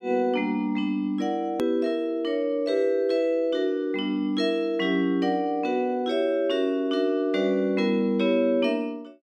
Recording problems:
edit click; at 1.5 s

